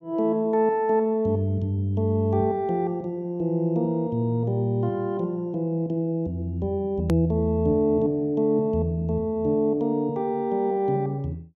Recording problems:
click at an edit; at 7 s

